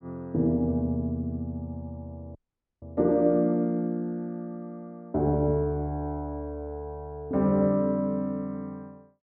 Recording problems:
audio cutting out; at 2.5 s

